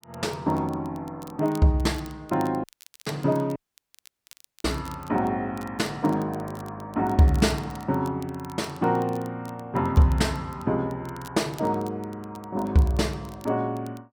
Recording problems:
crackling; vinyl, SNR 24 dB
dropout; at 2.5 s and at 3.5 s for 1 s

